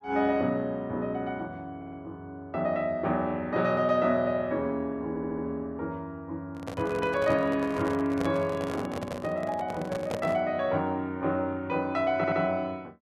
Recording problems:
stutter; at 2 s, at 5 s and at 12 s
handling noise; from 6.5 to 10 s; peak 0 dB vs average level

